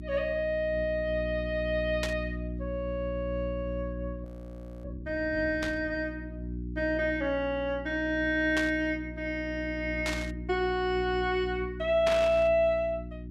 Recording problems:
hum; 60 Hz, harmonics up to 360 Hz, SNR 9 dB
burst of static; 5 times, first at 2 s; peak 0 dB vs average level
frozen audio; at 4.5 s for 0.5 s

